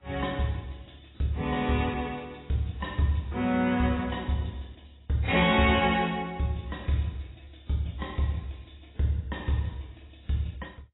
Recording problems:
lossy compression; AAC, log-spectral distance 7 dB, nothing above 3.8 kHz

